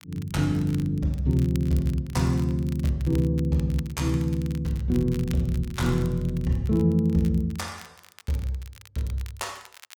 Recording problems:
crackle; vinyl, SNR 22 dB

